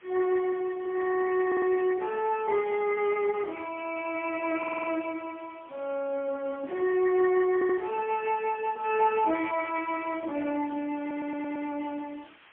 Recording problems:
phone line; 240 Hz to 3.3 kHz, AMR-NB, then MP3
background hiss; SNR 27 dB
stutter; 4 times, first at 1.5 s

